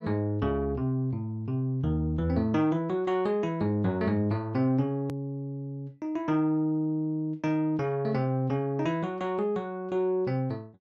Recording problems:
click at an edit; at 5 s

